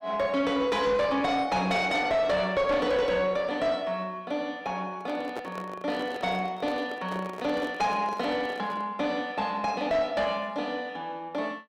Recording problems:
distorted audio; soft clipping, signal-to-distortion ratio 11 dB
microphone handling noise; from 5 to 9 s; peak -4 dB vs average level

